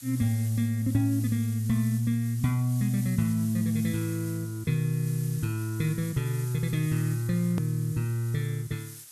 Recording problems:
background hiss; slope +3 dB per octave, SNR 16 dB
click at an edit; at 7.5 s

